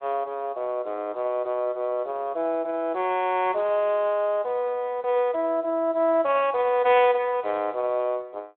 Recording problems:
phone line; 280 Hz to 3.9 kHz, Speex

